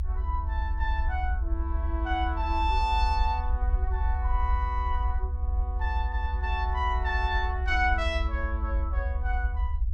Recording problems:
rumble; below 70 Hz, SNR -1 dB

